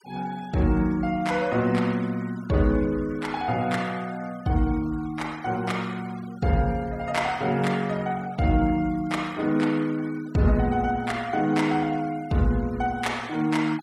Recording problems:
denoising artefacts; signal-to-artefact ratio 22 dB

